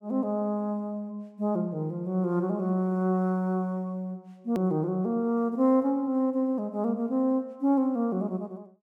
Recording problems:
hard cut with a click; at 4.5 s

